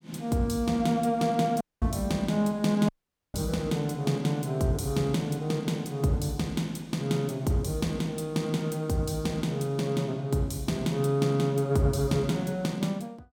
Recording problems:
dropout; at 1.5 s and at 3 s

